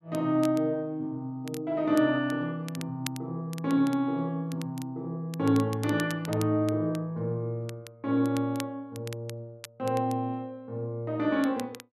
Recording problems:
crackle; vinyl, SNR 17 dB

